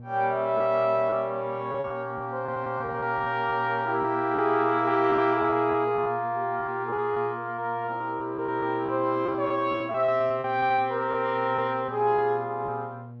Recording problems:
hum; 60 Hz, harmonics up to 600 Hz, SNR 18 dB
lost packets; 9% of the sound replaced, filled with repeated pitch periods

